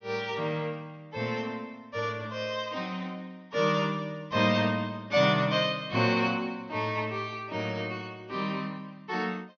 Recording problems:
treble cut off; nothing above 6.4 kHz

